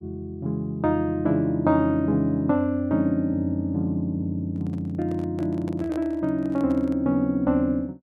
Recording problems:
handling noise; from 4.5 to 7 s; peak -11 dB vs average level

